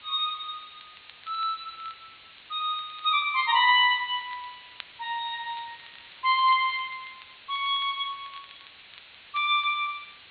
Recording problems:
low-pass filter; nothing above 4.3 kHz
background hiss; SNR 22 dB
crackling; vinyl, SNR 27 dB

